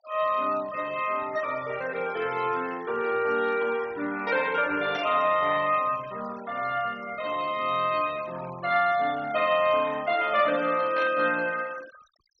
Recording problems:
treble cut off; nothing above 6.3 kHz
denoising artefacts; signal-to-artefact ratio 19 dB
static burst; at 5 s and at 11 s; peak -8 dB vs average level

